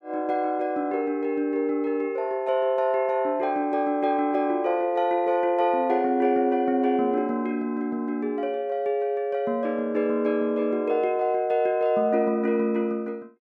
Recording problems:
none

